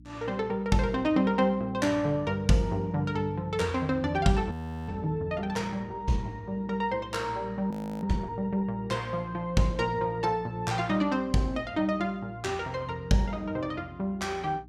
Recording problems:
electrical hum; 60 Hz, harmonics up to 300 Hz, SNR 21 dB
audio freezing; at 4.5 s and at 7.5 s

